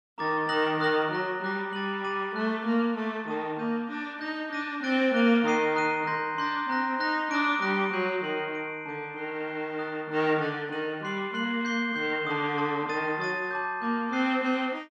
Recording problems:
none

